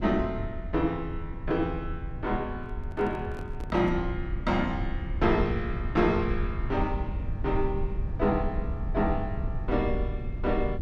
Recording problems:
rumble; below 90 Hz, SNR 5 dB
microphone handling noise; from 2.5 to 4 s; peak -9 dB vs average level

